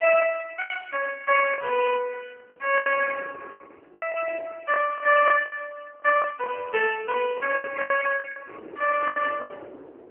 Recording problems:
phone line; 220 Hz to 2.7 kHz, AMR-NB
wind on the microphone; below 560 Hz, SNR 19 dB
packet loss; 11% of the sound replaced, filled with the last packet

